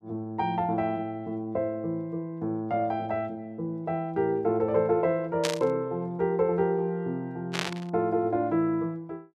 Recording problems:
static burst; at 5.5 s and at 7.5 s; peak +4 dB vs average level

